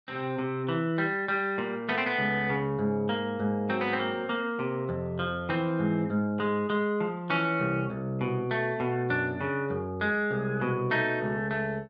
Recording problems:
none

